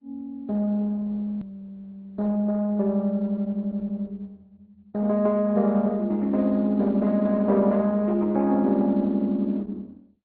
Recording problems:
treble missing; nothing above 4.5 kHz
lossy compression; Opus, log-spectral distance 2 dB
edit click; at 1.5 s

